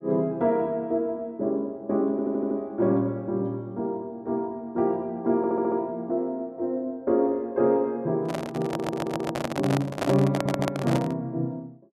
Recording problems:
audio stuttering; 4 times, first at 2 s
microphone handling noise; from 8 to 11 s; peak +3 dB vs average level

